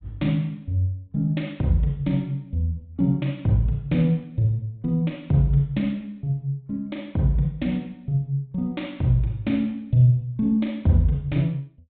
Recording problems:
low-pass filter; nothing above 4 kHz

